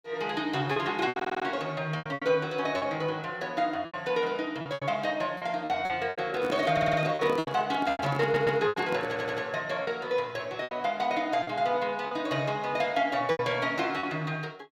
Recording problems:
packet loss; 10% of the sound replaced, filled with repeated pitch periods
audio stuttering; 4 times, first at 1 s
microphone handling noise; from 6.5 to 9.5 s; peak -3 dB vs average level

